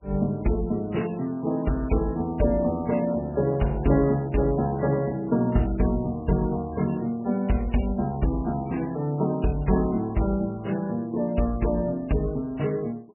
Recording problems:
codec artefacts; MP3, log-spectral distance 2 dB, nothing above 2.9 kHz

